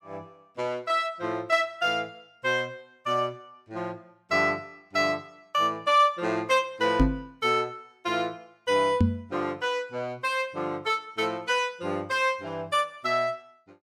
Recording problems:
microphone thump; at 7 s and at 9 s; peak +9 dB vs average level

